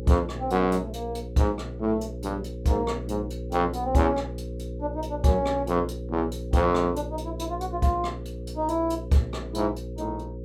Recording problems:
hum; 60 Hz, harmonics up to 540 Hz, SNR 9 dB

